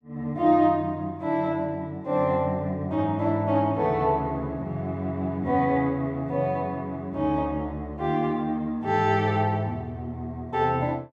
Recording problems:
none

